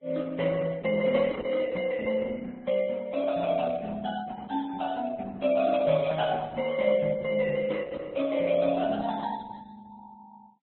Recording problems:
codec artefacts; Opus, then Vorbis, log-spectral distance 4 dB, nothing above 3.6 kHz

